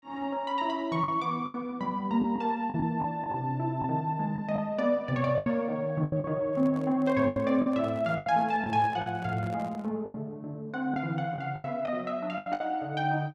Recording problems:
lost packets; 9% of the sound replaced, filled with the last packet
handling noise; from 6.5 to 10 s; peak -11 dB vs average level

